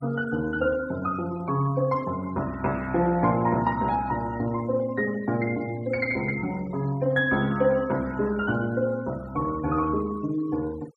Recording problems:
denoising artefacts; signal-to-artefact ratio 21 dB

